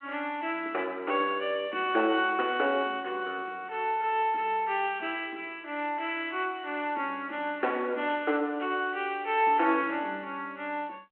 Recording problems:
telephone audio; 260 Hz to 3.2 kHz, G.726

